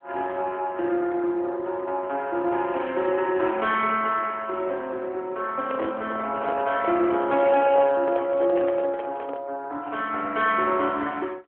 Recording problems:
telephone audio; 300 Hz to 3.4 kHz, AMR-NB
handling noise; from 5.5 to 9.5 s; peak -4 dB vs average level

